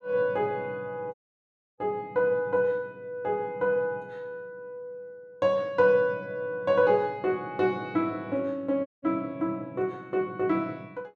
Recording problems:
dropout; at 1 s for 0.5 s and at 9 s

